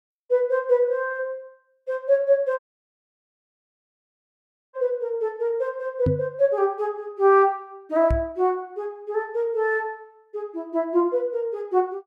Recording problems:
audio cutting out; at 2.5 s for 2 s
knock on the microphone; at 6 s and at 8 s; peak +4 dB vs average level

